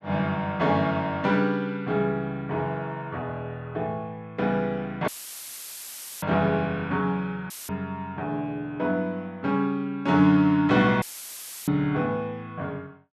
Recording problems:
audio cutting out; at 5 s for 1 s, at 7.5 s and at 11 s for 0.5 s; filled with static

